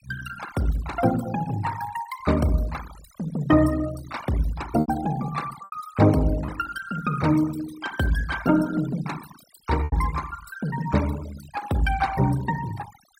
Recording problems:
denoising artefacts; signal-to-artefact ratio 15 dB
lost packets; 2% of the sound replaced, filled with repeated pitch periods

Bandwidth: 16 kHz